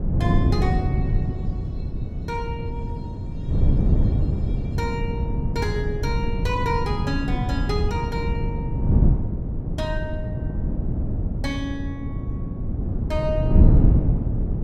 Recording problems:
wind noise; below 160 Hz, SNR -6 dB

